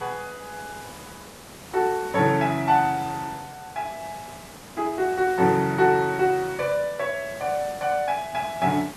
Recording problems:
background hiss; slope -4 dB per octave, SNR 17 dB

